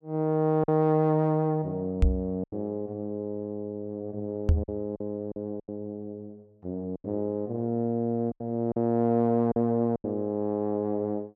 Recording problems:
lost packets; 6% of the sound replaced, filled with silence
microphone bump; at 2 s and at 4.5 s; peak +9 dB vs average level

